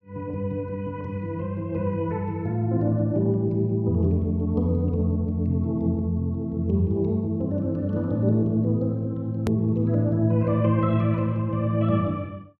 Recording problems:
click at an edit; at 9.5 s

